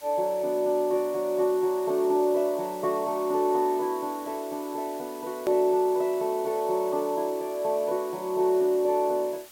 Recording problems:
hiss; slope 0 dB per octave, SNR 20 dB
edit click; at 5.5 s

